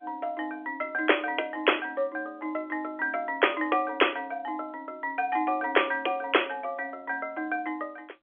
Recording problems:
telephone audio; 300 Hz to 3.4 kHz, G.711

